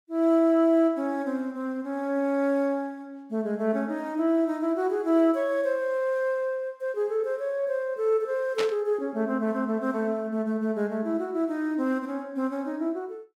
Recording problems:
burst of static; at 8.5 s; peak -1 dB vs average level

